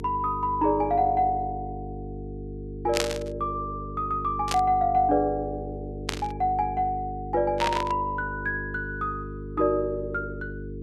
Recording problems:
electrical hum; 50 Hz, harmonics up to 450 Hz, SNR 10 dB
burst of static; 4 times, first at 3 s; peak +4 dB vs average level

